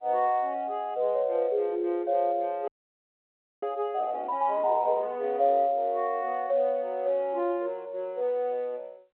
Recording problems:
telephone audio; 300 Hz to 3.9 kHz, G.711
frozen audio; at 2.5 s for 1 s

